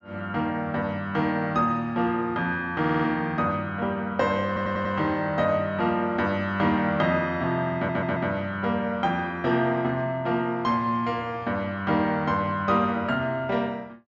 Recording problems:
treble missing; nothing above 8 kHz
audio stuttering; at 3 s, at 4.5 s and at 8 s

